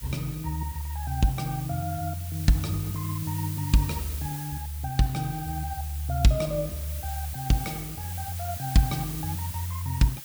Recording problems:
background hiss; slope +2 dB per octave, SNR 9 dB

